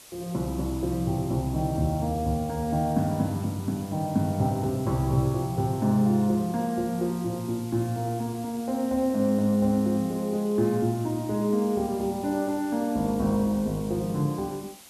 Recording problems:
background hiss; SNR 20 dB

